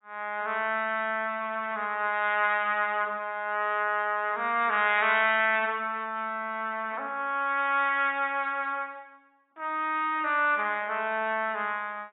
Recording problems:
codec artefacts; AAC, log-spectral distance 2 dB, nothing above 3.4 kHz

